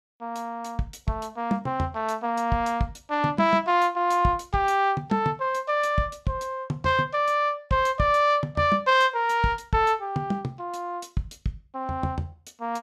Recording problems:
none

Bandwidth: 15 kHz